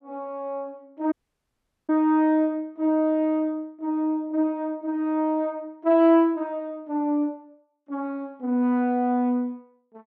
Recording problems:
dropout; at 1 s for 1 s

